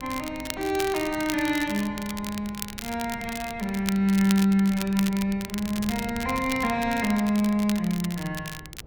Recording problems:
wind noise; below 210 Hz, SNR 18 dB
crackle; vinyl, SNR 11 dB

